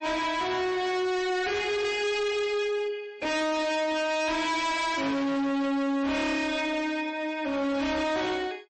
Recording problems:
codec artefacts; MP3, log-spectral distance 2 dB, nothing above 8.2 kHz
distorted audio; hard clipping, signal-to-distortion ratio 7 dB

